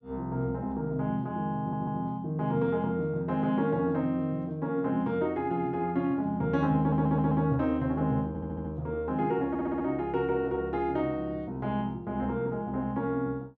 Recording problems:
audio stuttering; 4 times, first at 1.5 s

